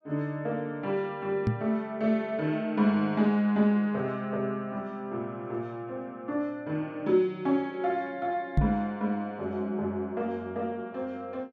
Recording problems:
microphone bump; at 1.5 s and at 8.5 s; peak +8 dB vs average level

